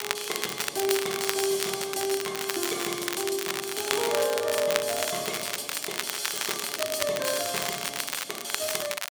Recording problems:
crackling; vinyl, SNR 3 dB

